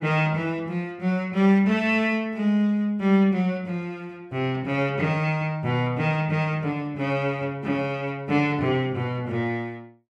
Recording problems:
none

